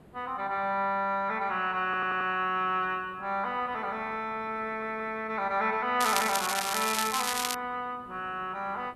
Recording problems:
background hiss; SNR 25 dB
audio stuttering; at 2 s and at 4.5 s
crackling; from 6 to 7.5 s; loose cable, SNR 1 dB

